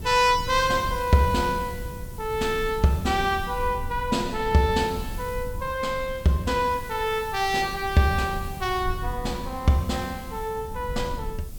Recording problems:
hiss; slope 0 dB per octave, SNR 21 dB
low-frequency rumble; below 100 Hz, SNR 13 dB

